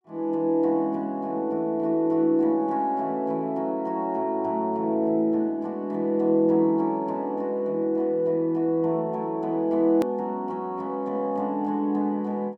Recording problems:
edit click; at 10 s

